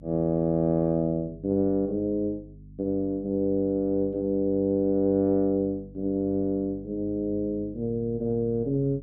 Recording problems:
electrical hum; 50 Hz, harmonics up to 300 Hz, SNR 21 dB

